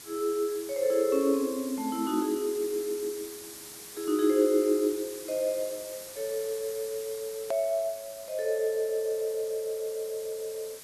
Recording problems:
background hiss; slope 0 dB per octave, SNR 13 dB
hard cut with a click; at 7.5 s

